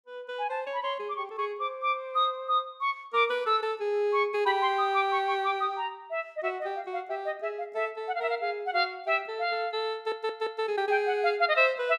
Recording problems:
audio stuttering; at 10 s

